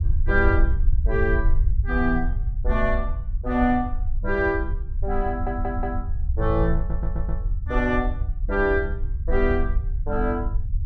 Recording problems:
low-frequency rumble; below 64 Hz, SNR 1 dB
audio stuttering; at 5.5 s and at 7 s

